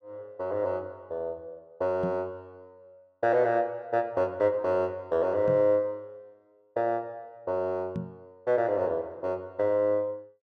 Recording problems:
microphone thump; at 2 s, at 5.5 s and at 8 s; peak -2 dB vs average level

